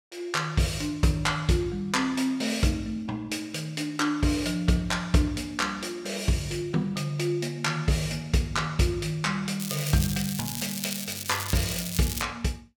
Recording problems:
crackle; from 9.5 to 12 s; loose cable, SNR 5 dB

